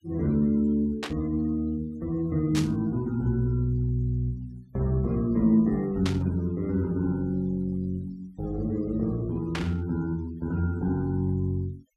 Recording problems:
denoising artefacts; signal-to-artefact ratio 27 dB
static burst; 4 times, first at 1 s; peak -2 dB vs average level

